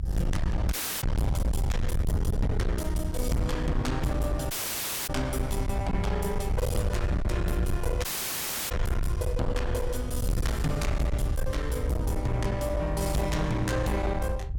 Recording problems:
distortion; hard clipping, uneven, signal-to-distortion ratio 6 dB
rumble; below 96 Hz, SNR 0 dB
audio cutting out; at 0.5 s, at 4.5 s for 0.5 s and at 8 s for 0.5 s

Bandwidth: 17.5 kHz